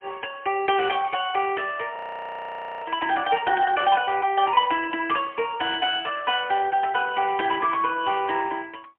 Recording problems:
telephone audio; 280 Hz to 3.3 kHz, AMR-NB, then MP3
frozen audio; at 2 s for 1 s
burst of static; at 7.5 s; peak -11 dB vs average level

